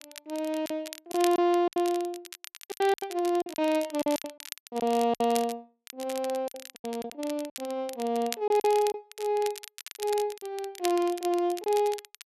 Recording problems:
crackle; vinyl, SNR 14 dB
lost packets; 10% of the sound replaced, filled with silence

